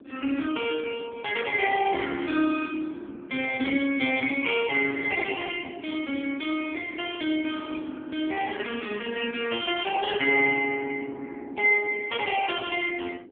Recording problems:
phone line; 220 Hz to 3.3 kHz, AMR-NB
wind on the microphone; below 360 Hz, SNR 17 dB

